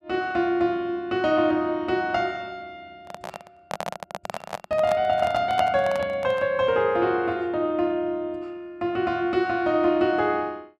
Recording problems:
handling noise; from 3 to 6.5 s; peak 0 dB vs average level

